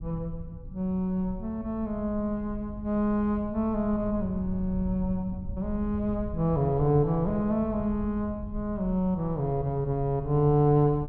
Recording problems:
low-frequency rumble; below 100 Hz, SNR 12 dB

